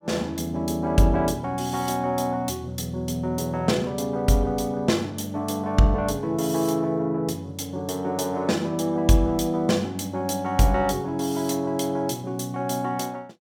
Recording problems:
none

